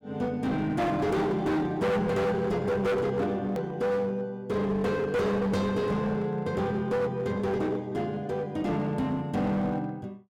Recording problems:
distorted audio; hard clipping, uneven, signal-to-distortion ratio 7 dB
click at an edit; at 3.5 s

